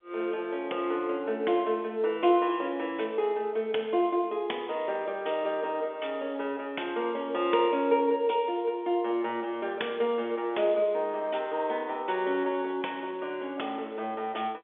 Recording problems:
phone line; 300 Hz to 3.5 kHz, G.711

